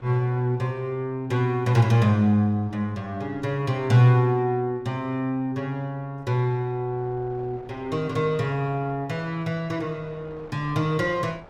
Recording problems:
wind noise; below 840 Hz, SNR 26 dB

